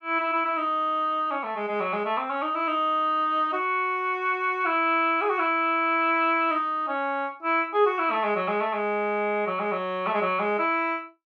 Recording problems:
none

